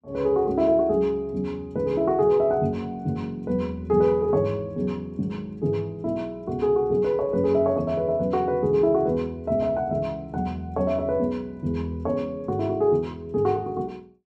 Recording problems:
none

